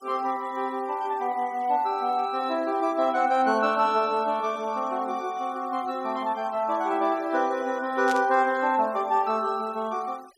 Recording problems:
noise reduction artefacts; signal-to-artefact ratio 26 dB
static burst; at 8 s; peak -7 dB vs average level

